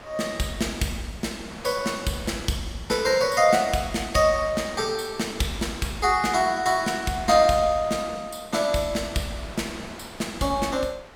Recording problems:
wind noise; below 2.2 kHz, SNR 18 dB

